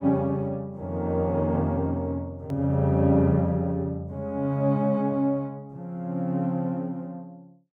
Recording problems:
edit click; at 2.5 s

